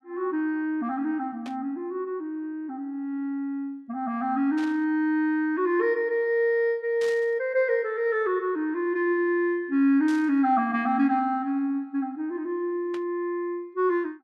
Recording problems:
burst of static; 5 times, first at 1.5 s; peak -11 dB vs average level

